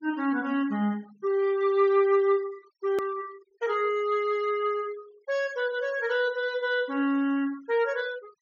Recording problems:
treble cut off; nothing above 6.8 kHz
noise reduction artefacts; signal-to-artefact ratio 23 dB
click at an edit; at 3 s

